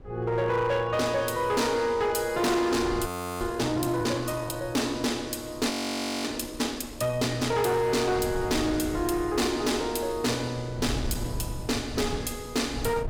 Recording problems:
distorted audio; hard clipping, uneven, signal-to-distortion ratio 11 dB
wind on the microphone; below 180 Hz, SNR 14 dB
frozen audio; at 3 s and at 5.5 s for 0.5 s

